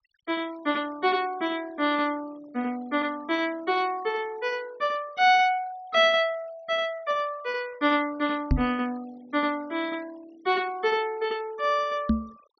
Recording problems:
treble cut off; nothing above 6 kHz
denoising artefacts; signal-to-artefact ratio 25 dB
microphone bump; at 8.5 s and at 12 s; peak +7 dB vs average level

